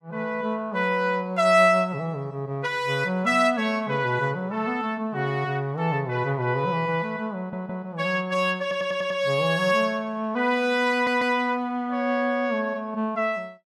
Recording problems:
audio stuttering; at 7.5 s, at 8.5 s and at 11 s

